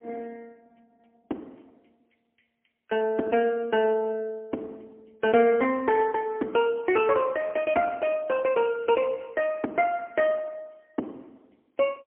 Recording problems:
telephone audio; 240 Hz to 3 kHz, AMR-NB, then MP3

